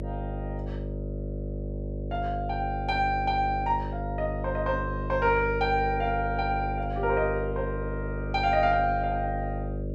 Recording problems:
hum; 50 Hz, harmonics up to 600 Hz, SNR 5 dB

